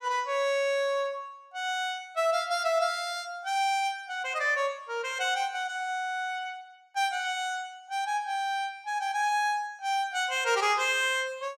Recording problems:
none

